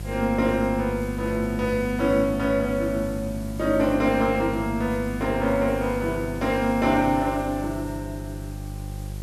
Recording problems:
hum; 50 Hz, harmonics up to 700 Hz, SNR 11 dB
hiss; slope 0 dB per octave, SNR 23 dB

